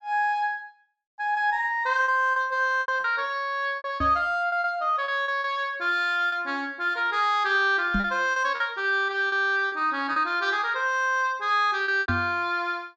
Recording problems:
treble cut off; nothing above 8 kHz
packet loss; 7% of the sound replaced, filled with repeated pitch periods
microphone thump; at 4 s, at 8 s and at 12 s; peak 0 dB vs average level

